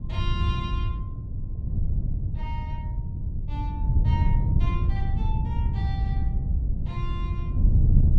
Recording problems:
wind noise; below 110 Hz, SNR -12 dB

